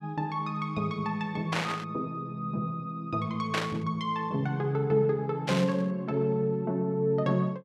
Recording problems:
burst of static; at 1.5 s, at 3.5 s and at 5.5 s; peak +3 dB vs average level

